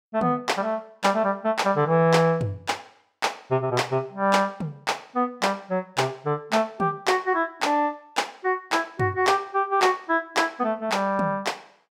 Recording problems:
none

